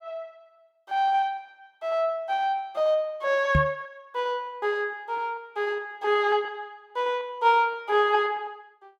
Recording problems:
packet loss; 8% of the sound replaced, filled with repeated pitch periods
knock on the microphone; at 3.5 s; peak +6 dB vs average level

